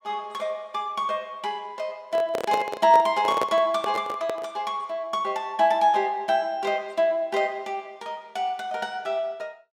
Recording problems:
microphone handling noise; from 2 to 4.5 s; peak +2 dB vs average level

